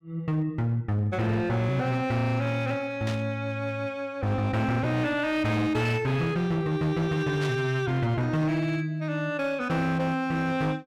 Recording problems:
distortion; hard clipping, uneven, signal-to-distortion ratio 12 dB
burst of static; at 3 s and at 7.5 s; peak -6 dB vs average level

